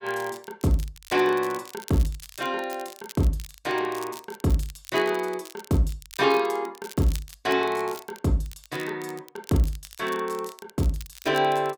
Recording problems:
crackle; vinyl, SNR 18 dB

